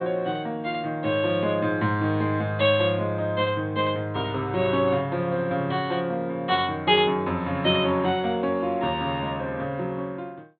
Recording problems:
treble cut off; nothing above 4.1 kHz

